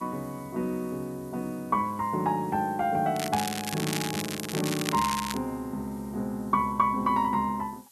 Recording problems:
hiss; SNR 24 dB
crackling; from 3 to 5.5 s; loose cable, SNR 5 dB

